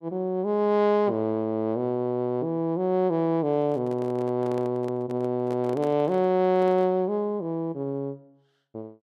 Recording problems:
handling noise; from 3.5 to 7 s; peak -8 dB vs average level

